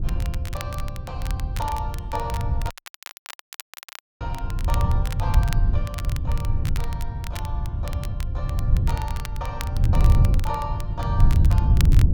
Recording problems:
wind noise; below 100 Hz, SNR -11 dB
crackle; vinyl, SNR 5 dB
audio cutting out; at 2.5 s for 1.5 s

